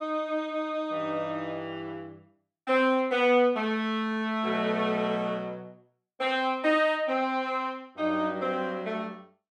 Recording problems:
none

